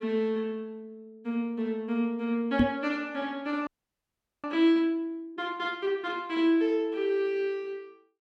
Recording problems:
microphone bump; at 2.5 s; peak +9 dB vs average level
audio freezing; at 3.5 s for 1 s

